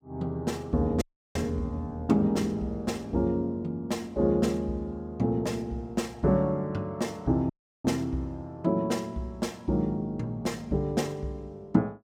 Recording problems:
audio cutting out; at 1 s and at 7.5 s

